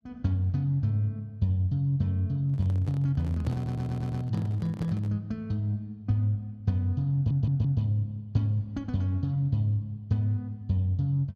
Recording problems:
microphone handling noise; from 2.5 to 5 s; peak -7 dB vs average level
audio stuttering; at 3.5 s and at 7 s

